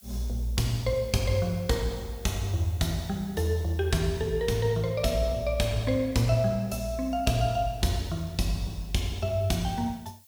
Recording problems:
hiss; slope +3 dB per octave, SNR 25 dB

